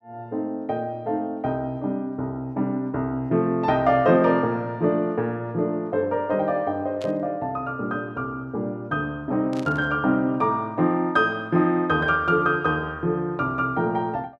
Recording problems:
static burst; at 7 s and at 9.5 s; peak -12 dB vs average level

